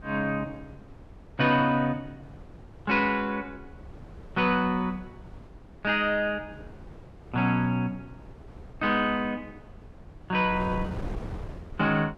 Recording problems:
wind on the microphone; below 310 Hz, SNR 17 dB

